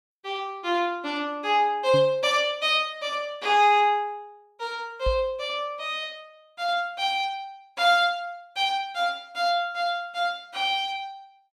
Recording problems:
microphone thump; at 2 s and at 5 s; peak -1 dB vs average level

